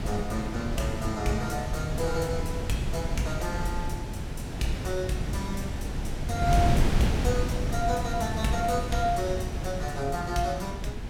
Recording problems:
wind noise; below 200 Hz, SNR 0 dB

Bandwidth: 17 kHz